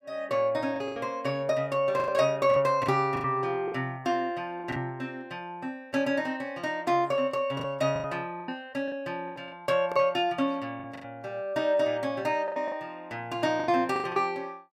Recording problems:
packet loss; 9% of the sound replaced, filled with the last packet

